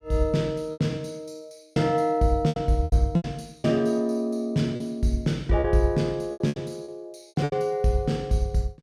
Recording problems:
packet loss; 9% of the sound replaced, filled with repeated pitch periods

